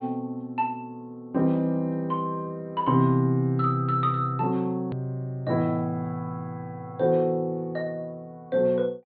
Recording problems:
treble missing; nothing above 4.4 kHz
hard cut with a click; at 5 s

